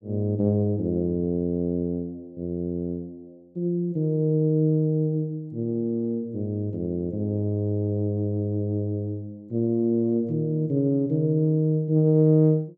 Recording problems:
none

